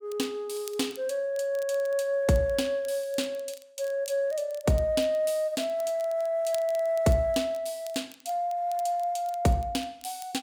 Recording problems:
crackle; vinyl, SNR 22 dB

